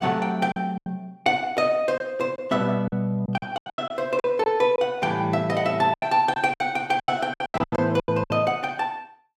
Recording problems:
lost packets; 13% of the sound replaced, filled with silence

